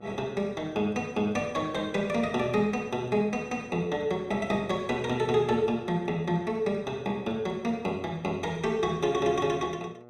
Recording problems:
electrical hum; 60 Hz, harmonics up to 1.9 kHz, SNR 22 dB

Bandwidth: 14.5 kHz